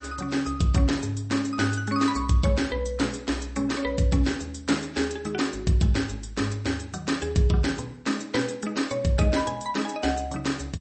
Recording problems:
codec artefacts; MP3, log-spectral distance 5 dB, nothing above 8.2 kHz

